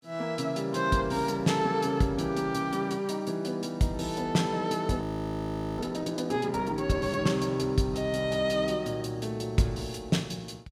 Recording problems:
audio freezing; at 5 s for 1 s

